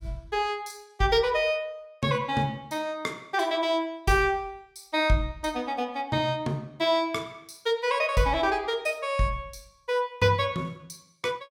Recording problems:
none

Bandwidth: 17 kHz